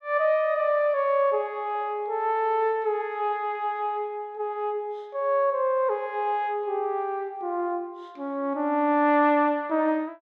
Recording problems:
none

